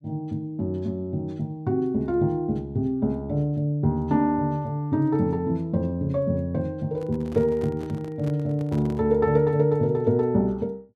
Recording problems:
microphone handling noise; from 7 to 9 s; peak -9 dB vs average level

